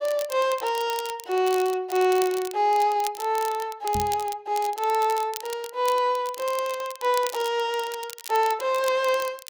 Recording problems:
crackling; vinyl, SNR 14 dB
microphone bump; at 4 s; peak -4 dB vs average level

